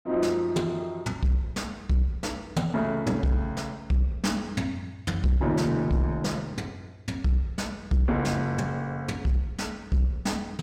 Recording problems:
distorted audio; soft clipping, signal-to-distortion ratio 11 dB

